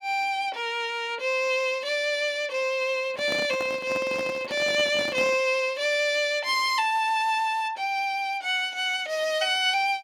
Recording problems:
handling noise; from 3 to 5.5 s; peak -5 dB vs average level

